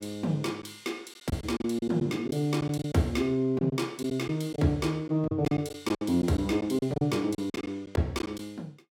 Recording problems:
packet loss; 9% of the sound replaced, filled with silence

